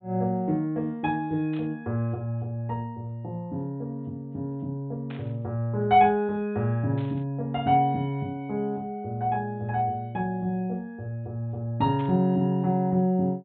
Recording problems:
low-pass filter; nothing above 4 kHz
static burst; 4 times, first at 1.5 s; peak -13 dB vs average level

